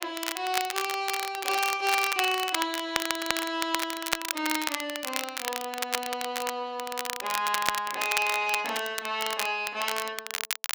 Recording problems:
crackle; vinyl, SNR 3 dB

